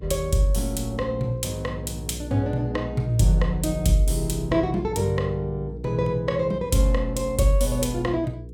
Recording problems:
hum; 60 Hz, harmonics up to 480 Hz, SNR 13 dB

